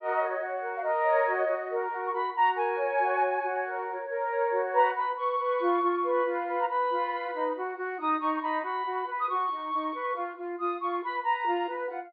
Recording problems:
treble cut off; nothing above 4.8 kHz

